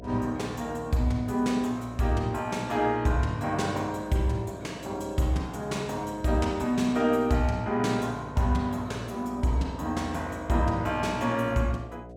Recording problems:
electrical hum; 60 Hz, harmonics up to 720 Hz, SNR 17 dB

